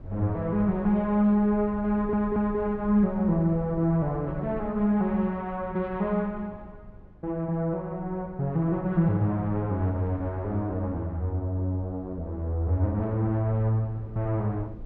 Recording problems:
low-frequency rumble; below 120 Hz, SNR 18 dB
stutter; at 2 s

